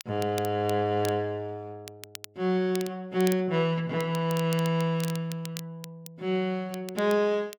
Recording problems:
crackle; vinyl, SNR 16 dB

